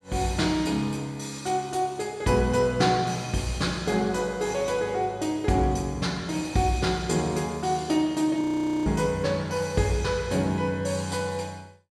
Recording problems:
audio freezing; at 8.5 s

